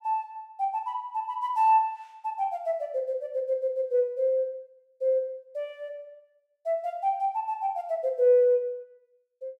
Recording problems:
none

